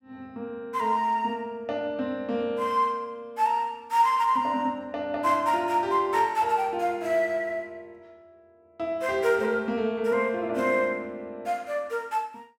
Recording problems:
none

